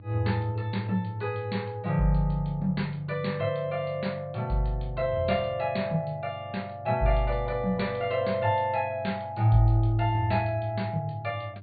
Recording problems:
treble cut off; nothing above 4.6 kHz
electrical hum; 50 Hz, harmonics up to 400 Hz, SNR 17 dB

